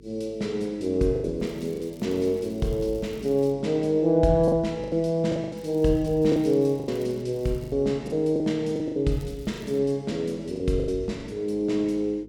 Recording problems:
electrical hum; 50 Hz, harmonics up to 450 Hz, SNR 25 dB
lost packets; 8% of the sound replaced, filled with the last packet
crackling; 4 times, first at 1.5 s; loose cable, SNR 29 dB

